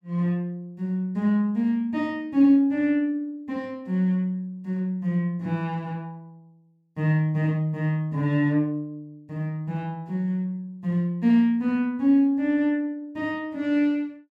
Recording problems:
none

